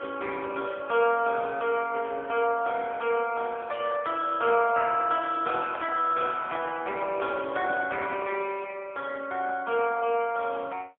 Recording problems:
telephone audio; 340 Hz to 3.3 kHz, AMR-NB, then MP3
handling noise; from 5.5 to 8.5 s; peak -6 dB vs average level

